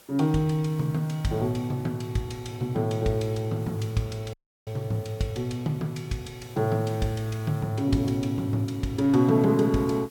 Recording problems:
background hiss; slope -2 dB per octave, SNR 25 dB
audio cutting out; at 4.5 s

